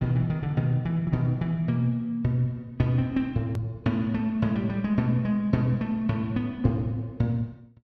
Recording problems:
hard cut with a click; at 3.5 s

